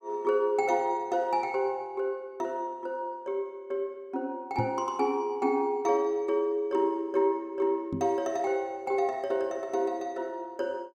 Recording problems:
knock on the microphone; at 4.5 s and at 8 s; peak +1 dB vs average level

